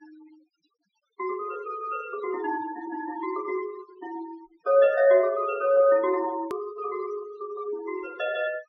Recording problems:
treble cut off; nothing above 6.1 kHz
noise reduction artefacts; signal-to-artefact ratio 20 dB
click at an edit; at 6.5 s

